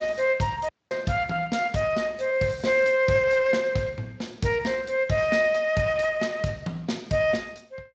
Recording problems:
lossy compression; Speex, log-spectral distance 5 dB, nothing above 7.3 kHz
audio cutting out; at 0.5 s

